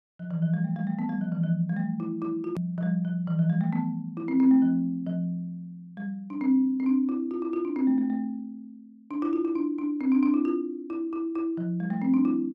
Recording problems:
hard cut with a click; at 2.5 s

